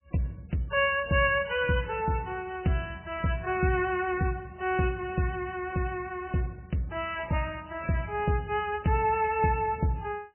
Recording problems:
codec artefacts; MP3, log-spectral distance 5 dB, nothing above 2.8 kHz

